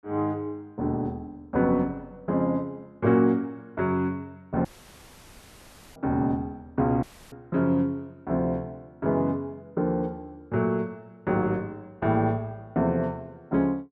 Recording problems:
audio cutting out; at 4.5 s for 1.5 s and at 7 s

